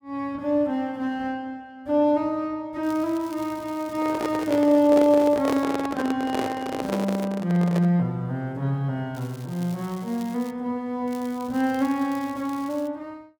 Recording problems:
crackling; 4 times, first at 3 s; loose cable, SNR 23 dB
microphone handling noise; from 4 to 8 s; peak +2 dB vs average level

